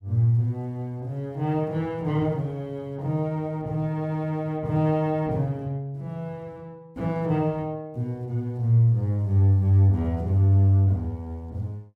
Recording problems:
none

